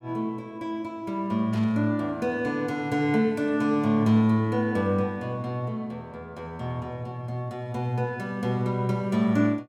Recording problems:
burst of static; at 1.5 s; peak -16 dB vs average level

